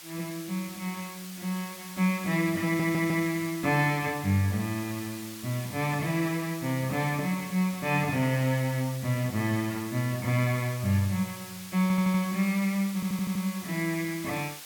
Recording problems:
background hiss; slope +2 dB per octave, SNR 13 dB
stutter; at 2.5 s, at 12 s and at 13 s

